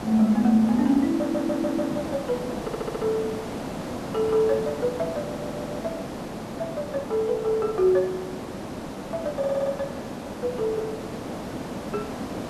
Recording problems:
background hiss; slope -7 dB per octave, SNR 8 dB
stutter; 4 times, first at 1 s

